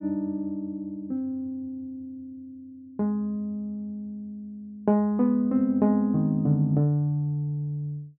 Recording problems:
none

